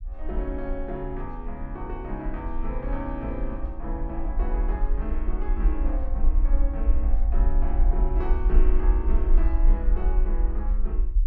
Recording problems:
low-frequency rumble; below 46 Hz, SNR -8 dB

